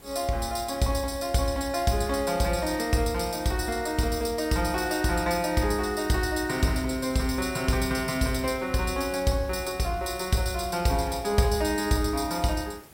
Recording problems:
hiss; slope -5 dB per octave, SNR 23 dB

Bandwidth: 16.5 kHz